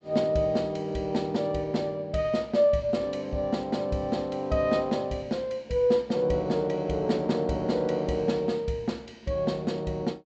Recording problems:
low-pass filter; nothing above 8 kHz

